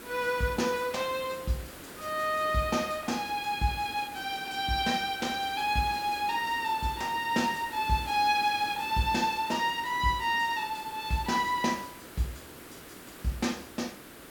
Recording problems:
hiss; SNR 15 dB

